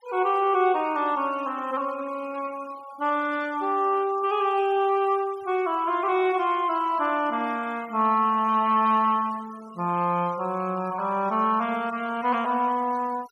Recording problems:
noise reduction artefacts; signal-to-artefact ratio 24 dB

